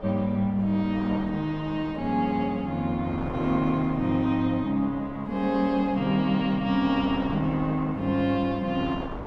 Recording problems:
wind on the microphone; below 860 Hz, SNR 13 dB

